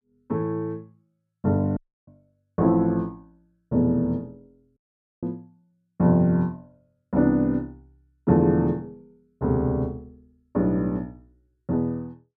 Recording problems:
audio cutting out; at 2 s and at 5 s

